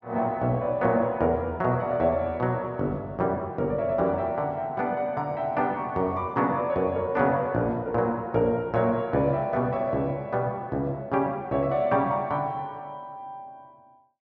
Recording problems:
none

